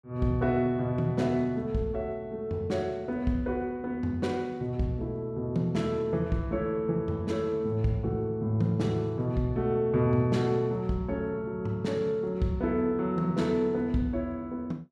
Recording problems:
none

